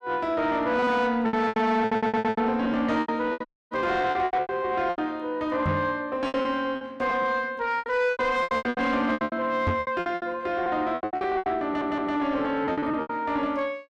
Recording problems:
distorted audio; soft clipping, signal-to-distortion ratio 11 dB
lost packets; 18% of the sound replaced, filled with repeated pitch periods
stutter; at 2 s and at 12 s
dropout; at 3.5 s
microphone thump; at 5.5 s and at 9.5 s; peak +3 dB vs average level

